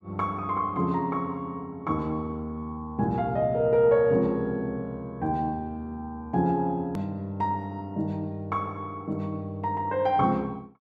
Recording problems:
click at an edit; at 7 s

